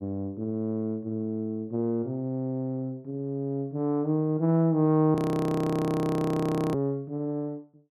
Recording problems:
frozen audio; at 5 s for 1.5 s

